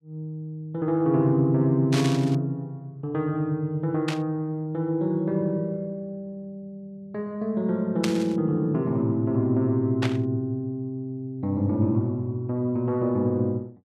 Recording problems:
burst of static; 4 times, first at 2 s; peak 0 dB vs average level

